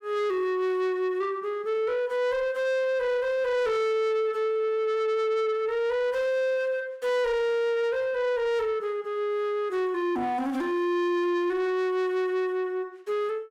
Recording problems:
distorted audio; soft clipping, signal-to-distortion ratio 11 dB

